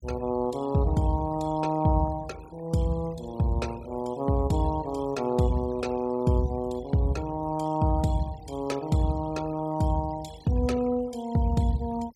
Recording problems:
noise reduction artefacts; signal-to-artefact ratio 21 dB

